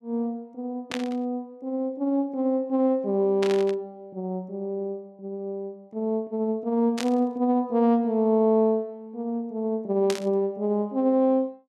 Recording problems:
burst of static; 4 times, first at 1 s; peak -2 dB vs average level

